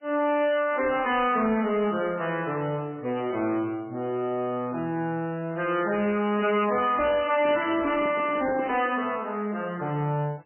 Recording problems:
lossy codec; MP3, log-spectral distance 3 dB, nothing above 2.7 kHz
distorted audio; soft clipping, signal-to-distortion ratio 11 dB
handling noise; from 7.5 to 9 s; peak -3 dB vs average level

